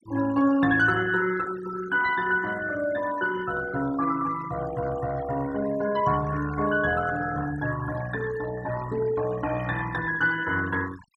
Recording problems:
denoising artefacts; signal-to-artefact ratio 15 dB

